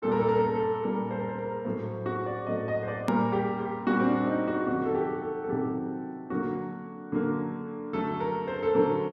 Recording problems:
click at an edit; at 3 s

